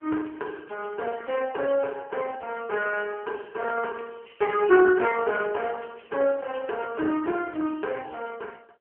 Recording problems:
phone line; 280 Hz to 3 kHz, AMR-NB

